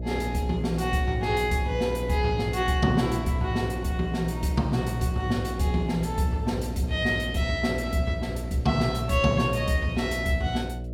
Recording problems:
electrical hum; 60 Hz, harmonics up to 660 Hz, SNR 8 dB

